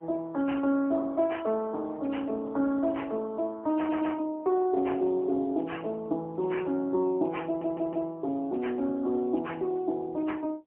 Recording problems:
telephone audio; 220 Hz to 3.1 kHz, AMR-NB, then MP3
audio stuttering; at 4 s and at 7.5 s

